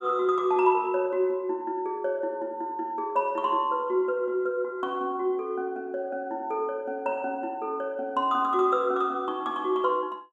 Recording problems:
none

